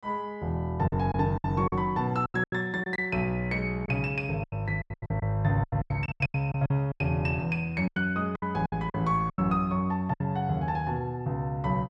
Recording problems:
packet loss; 13% of the sound replaced, filled with silence

